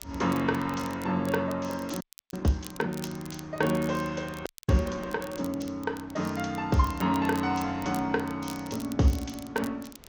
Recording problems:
lossy codec; MP2, then G.722, log-spectral distance 3 dB
wind on the microphone; below 1.3 kHz, SNR 24 dB
crackle; vinyl, SNR 18 dB
frozen audio; at 2 s and at 4.5 s

